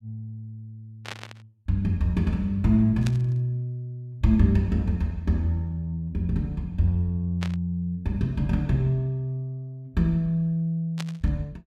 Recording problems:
burst of static; 4 times, first at 1 s; peak -5 dB vs average level

